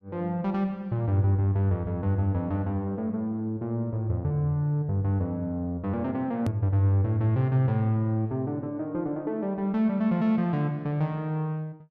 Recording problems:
edit click; at 6.5 s

